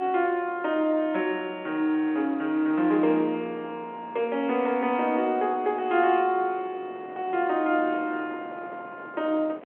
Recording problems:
phone line; 240 Hz to 3.6 kHz, G.711
wind noise; below 830 Hz, SNR 20 dB

